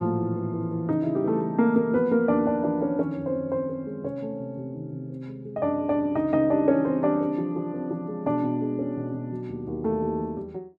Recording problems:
none

